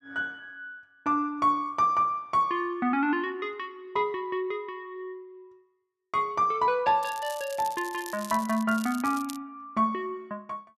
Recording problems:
crackling; from 7 to 9.5 s; loose cable, SNR 15 dB

